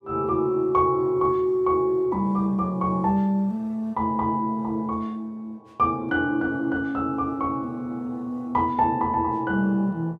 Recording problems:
none

